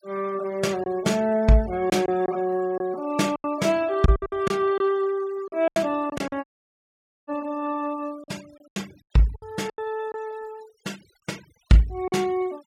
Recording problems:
denoising artefacts; signal-to-artefact ratio 23 dB
lost packets; 8% of the sound replaced, filled with silence
dropout; at 6.5 s for 1 s

